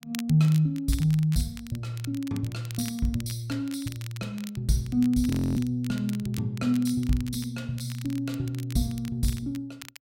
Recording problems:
crackle; vinyl, SNR 18 dB
audio freezing; at 5.5 s

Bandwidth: 16 kHz